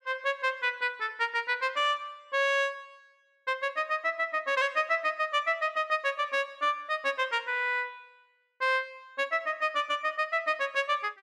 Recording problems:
none

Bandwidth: 13 kHz